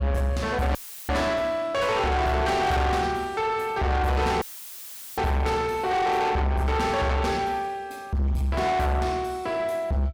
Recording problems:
distortion; soft clipping, signal-to-distortion ratio 7 dB
audio cutting out; at 1 s and at 4.5 s for 1 s; filled with static

